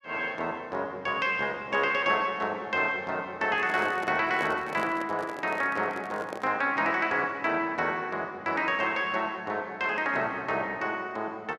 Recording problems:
handling noise; from 3.5 to 6.5 s; peak -3 dB vs average level

